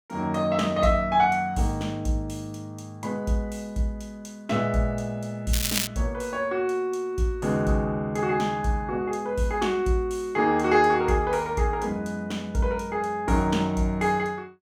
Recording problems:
crackling; at 5.5 s; loose cable, SNR 2 dB

